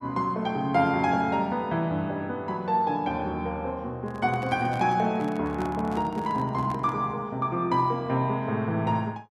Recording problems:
handling noise; from 4 to 7 s; peak -8 dB vs average level

